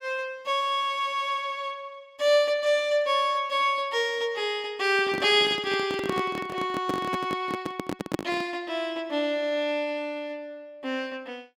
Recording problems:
handling noise; from 5 to 8.5 s; peak +2 dB vs average level

